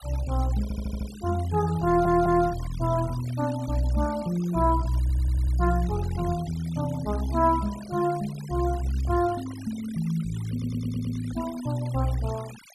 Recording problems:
noise reduction artefacts; signal-to-artefact ratio 19 dB
stutter; 4 times, first at 0.5 s

